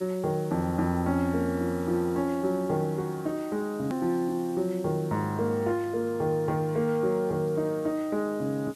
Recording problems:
background hiss; slope +2 dB per octave, SNR 24 dB
edit click; at 4 s

